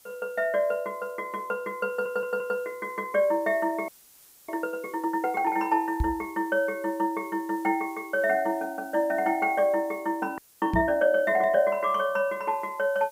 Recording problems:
hiss; slope 0 dB per octave, SNR 26 dB
stutter; at 2 s
audio freezing; at 4 s for 0.5 s and at 10 s
microphone thump; at 6 s and at 11 s; peak +3 dB vs average level

